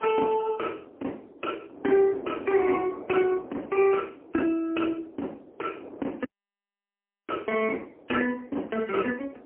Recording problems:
phone line; 240 Hz to 3.1 kHz, AMR-NB, then MP3
wind on the microphone; below 580 Hz, SNR 17 dB
dropout; at 6.5 s for 1 s

